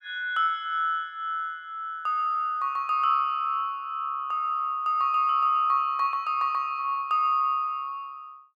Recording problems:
none

